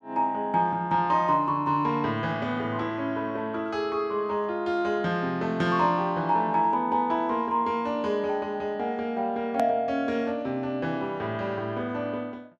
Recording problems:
hard cut with a click; at 9.5 s

